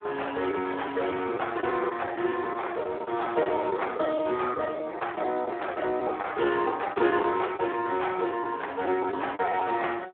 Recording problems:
phone line; 300 Hz to 3.5 kHz, Speex
lost packets; 10% of the sound replaced, filled with the last packet

